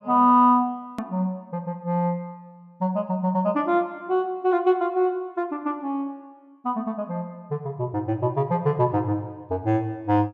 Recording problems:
hard cut with a click; at 1 s

